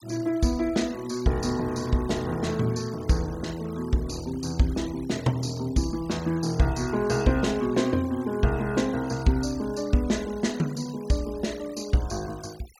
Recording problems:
denoising artefacts; signal-to-artefact ratio 20 dB

